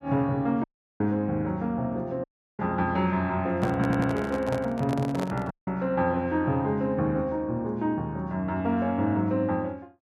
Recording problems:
dropout; at 0.5 s, at 2 s and at 5.5 s
handling noise; from 3.5 to 5.5 s; peak -3 dB vs average level
stutter; at 4 s

